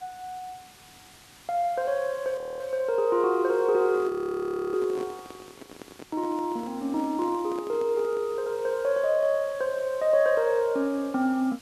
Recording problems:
hiss; slope -1 dB per octave, SNR 24 dB
audio freezing; at 2.5 s and at 4 s for 0.5 s
handling noise; from 3.5 to 8.5 s; peak -9 dB vs average level

